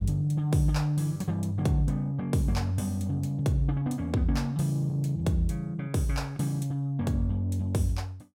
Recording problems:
none

